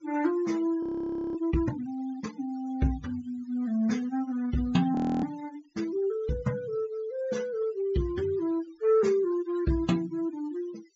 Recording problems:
low-pass filter; nothing above 7.4 kHz
noise reduction artefacts; signal-to-artefact ratio 19 dB
audio freezing; at 1 s for 0.5 s and at 5 s

